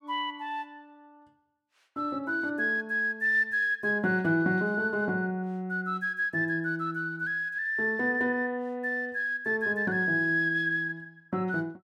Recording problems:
none

